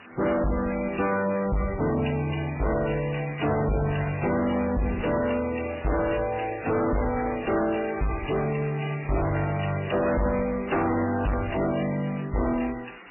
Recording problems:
lossy codec; MP3, then AAC, log-spectral distance 12 dB, nothing above 2.8 kHz
distorted audio; soft clipping, signal-to-distortion ratio 6 dB
background hiss; SNR 20 dB

